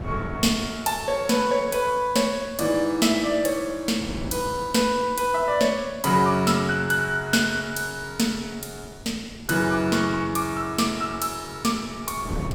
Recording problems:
wind noise; below 340 Hz, SNR 18 dB

